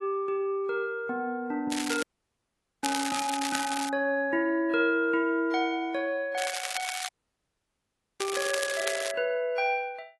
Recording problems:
lossy compression; AAC, log-spectral distance 5 dB, nothing above 11.3 kHz
crackle; from 1.5 to 4 s and from 6.5 to 9 s; loose cable, SNR 5 dB
audio cutting out; at 2 s for 1 s and at 7 s for 1 s

